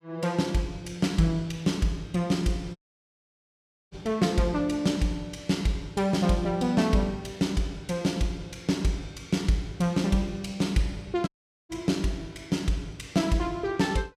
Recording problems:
audio cutting out; at 3 s for 1 s and at 11 s

